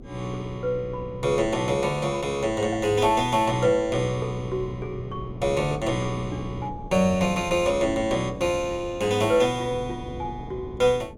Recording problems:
hum; 50 Hz, harmonics up to 500 Hz, SNR 23 dB
wind on the microphone; below 270 Hz, SNR 16 dB

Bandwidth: 16 kHz